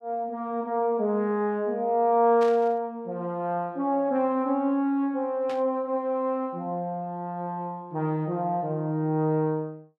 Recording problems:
burst of static; at 2.5 s and at 5.5 s; peak -11 dB vs average level

